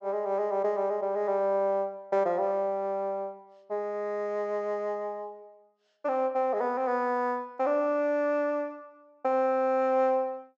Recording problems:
treble cut off; nothing above 8 kHz

